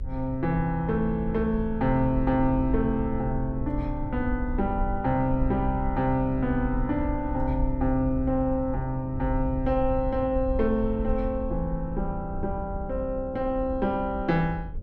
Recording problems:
hum; 60 Hz, harmonics up to 600 Hz, SNR 20 dB
rumble; below 68 Hz, SNR 8 dB

